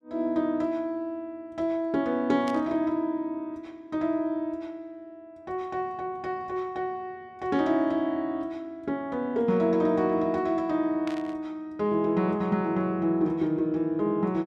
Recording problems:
static burst; at 2.5 s and at 11 s; peak -9 dB vs average level

